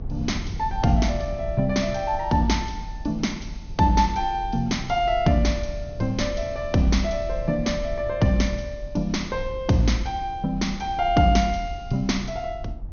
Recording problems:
treble missing; nothing above 6.5 kHz
low-frequency rumble; below 78 Hz, SNR 12 dB

